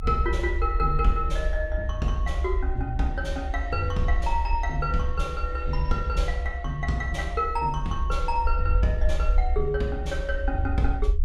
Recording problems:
rumble; below 66 Hz, SNR 1 dB

